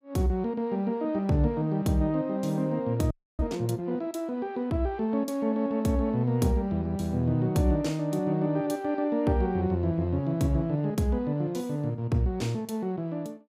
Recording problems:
audio freezing; at 3 s

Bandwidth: 15.5 kHz